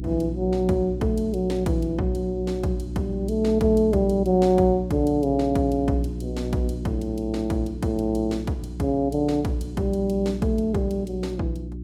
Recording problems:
hum; 60 Hz, harmonics up to 360 Hz, SNR 9 dB

